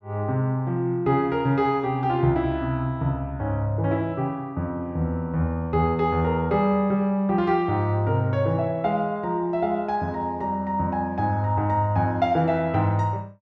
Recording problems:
none

